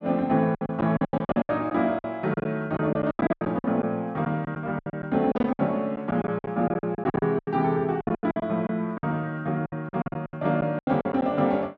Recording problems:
lost packets; 19% of the sound replaced, filled with silence

